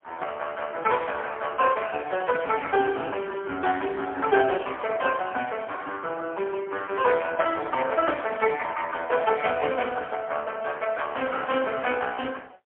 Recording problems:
telephone audio; 300 Hz to 3.4 kHz, AMR-NB, then MP3

